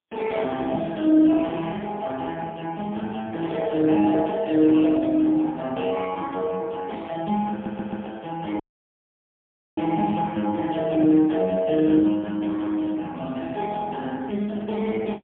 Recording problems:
phone line; 190 Hz to 3.5 kHz, AMR-NB, then MP3
audio stuttering; at 7.5 s
audio cutting out; at 8.5 s for 1 s

